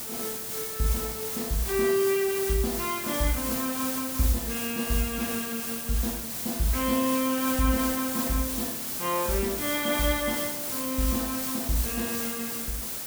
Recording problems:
background hiss; slope -1 dB per octave, SNR 1 dB

